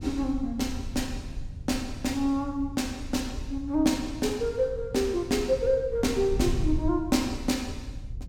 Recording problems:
wind noise; below 90 Hz, SNR 10 dB

